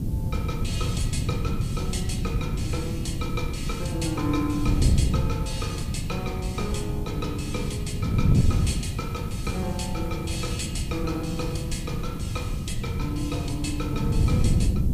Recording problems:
background hiss; SNR 18 dB
wind noise; below 160 Hz, SNR -4 dB

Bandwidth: 15 kHz